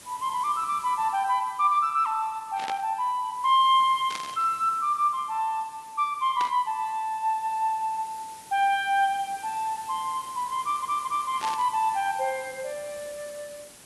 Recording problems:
lossy compression; AAC, log-spectral distance 7 dB
background hiss; slope -2 dB per octave, SNR 20 dB
burst of static; 4 times, first at 2.5 s; peak -5 dB vs average level
stutter; at 11 s

